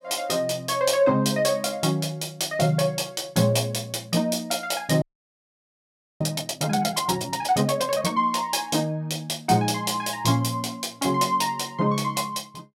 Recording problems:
frozen audio; at 5 s for 1 s

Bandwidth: 16 kHz